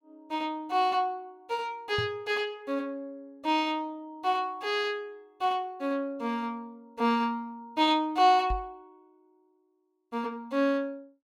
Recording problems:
microphone bump; at 2 s and at 8.5 s; peak -2 dB vs average level

